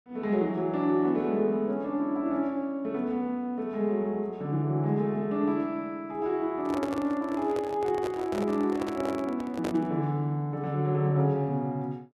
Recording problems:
microphone handling noise; from 6.5 to 10 s; peak -2 dB vs average level

